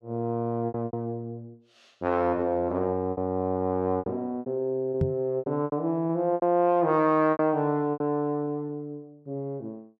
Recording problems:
packet loss; 9% of the sound replaced, filled with repeated pitch periods
microphone thump; at 5 s; peak +5 dB vs average level

